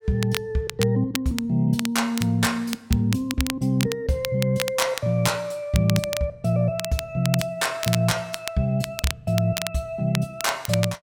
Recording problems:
crackling; vinyl, SNR 8 dB

